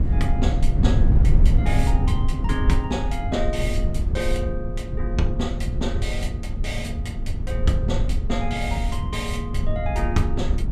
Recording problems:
rumble; below 88 Hz, SNR -5 dB

